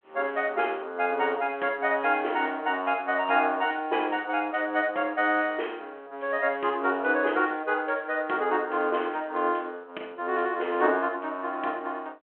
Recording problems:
phone line; 260 Hz to 3.3 kHz, G.726

